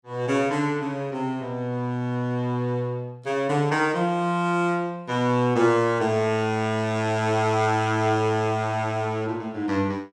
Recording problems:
none

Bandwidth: 16.5 kHz